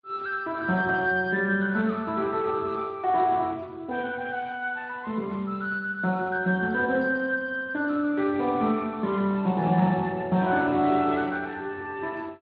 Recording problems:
codec artefacts; Speex, then MP3, log-spectral distance 3 dB

